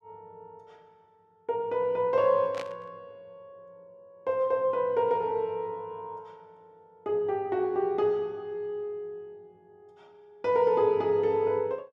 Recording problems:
burst of static; at 2.5 s; peak -8 dB vs average level

